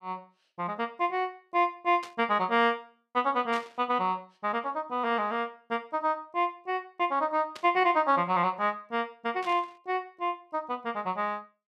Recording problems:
burst of static; 4 times, first at 2 s; peak -9 dB vs average level

